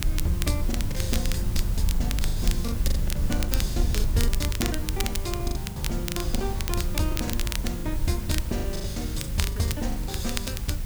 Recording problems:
hum; 50 Hz, harmonics up to 700 Hz, SNR 10 dB
hiss; slope +1 dB per octave, SNR 10 dB
rumble; below 70 Hz, SNR -1 dB
crackling; vinyl, SNR 3 dB
lost packets; 16% of the sound replaced, filled with the last packet

